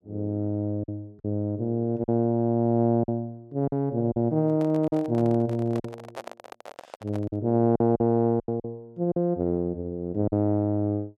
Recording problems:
lost packets; 6% of the sound replaced, filled with silence
handling noise; from 4.5 to 7.5 s; peak -7 dB vs average level

